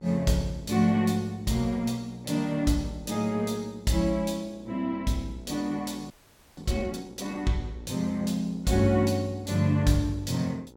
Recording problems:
electrical hum; 60 Hz, harmonics up to 1.3 kHz, SNR 23 dB
frozen audio; at 6 s

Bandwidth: 17.5 kHz